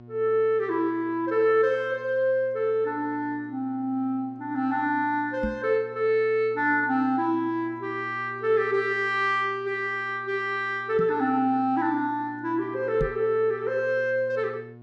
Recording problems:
hum; 60 Hz, harmonics up to 1.1 kHz, SNR 21 dB
knock on the microphone; at 5.5 s, at 11 s and at 13 s; peak -1 dB vs average level

